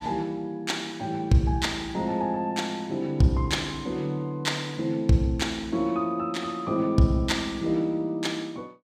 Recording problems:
none

